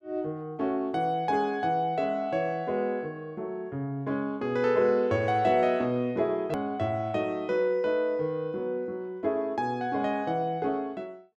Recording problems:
hard cut with a click; at 6.5 s

